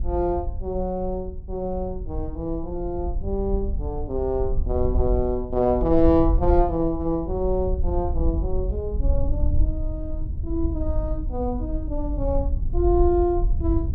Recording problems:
wind noise; below 64 Hz, SNR 3 dB

